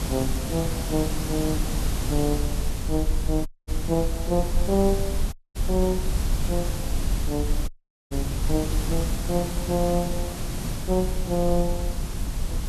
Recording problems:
background hiss; slope -4 dB per octave, SNR 4 dB
rumble; below 58 Hz, SNR 4 dB
dropout; at 3.5 s, at 5.5 s and at 7.5 s

